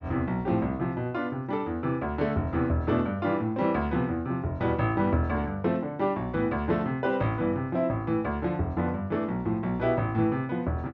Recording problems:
treble missing; nothing above 8 kHz

